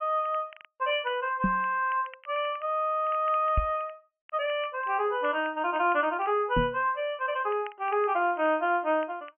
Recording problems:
treble missing; nothing above 3.1 kHz
crackling; vinyl, SNR 26 dB
microphone thump; at 1.5 s, at 3.5 s and at 6.5 s; peak +4 dB vs average level

